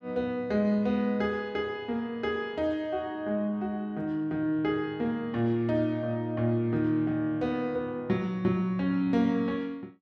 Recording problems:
none

